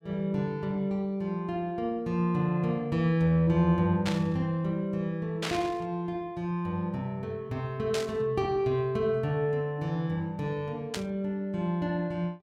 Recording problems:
static burst; 4 times, first at 4 s; peak 0 dB vs average level

